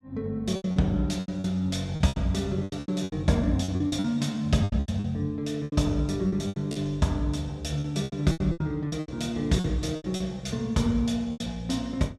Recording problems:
lost packets; 15% of the sound replaced, filled with repeated pitch periods

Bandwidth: 15 kHz